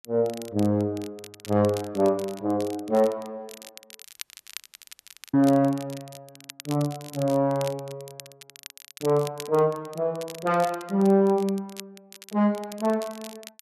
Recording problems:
crackle; vinyl, SNR 19 dB
dropout; at 4 s for 1.5 s

